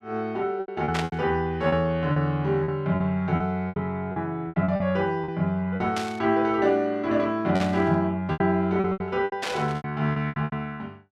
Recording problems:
lost packets; 12% of the sound replaced, filled with repeated pitch periods
burst of static; 4 times, first at 1 s; peak -1 dB vs average level

